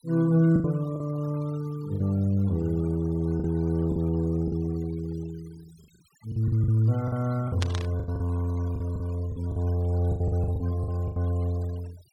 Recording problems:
noise reduction artefacts; signal-to-artefact ratio 23 dB
packet loss; 9% of the sound replaced, filled with the last packet
static burst; at 7.5 s; peak -2 dB vs average level

